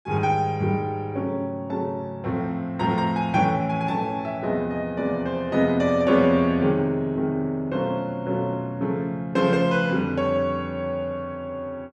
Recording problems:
none

